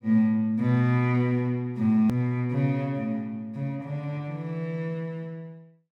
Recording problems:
edit click; at 2 s

